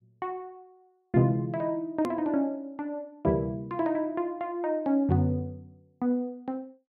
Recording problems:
edit click; at 2 s

